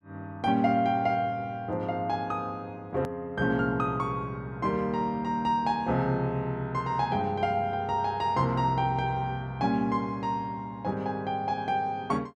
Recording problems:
click at an edit; at 3 s

